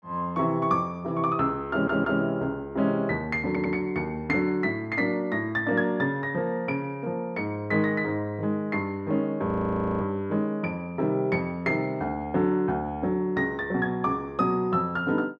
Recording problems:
stutter; at 1.5 s and at 3.5 s
frozen audio; at 9.5 s for 0.5 s

